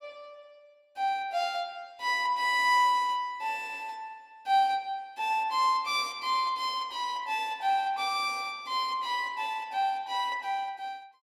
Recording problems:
none

